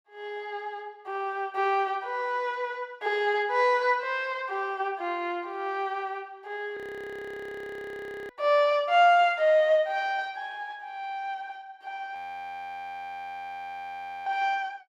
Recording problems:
frozen audio; at 7 s for 1.5 s and at 12 s for 2 s

